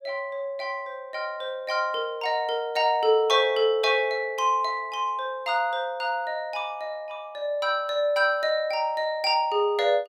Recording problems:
none

